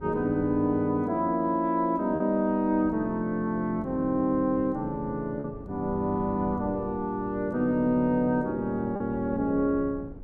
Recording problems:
wind on the microphone; below 230 Hz, SNR 18 dB
packet loss; 1.2% of the sound replaced, filled with repeated pitch periods

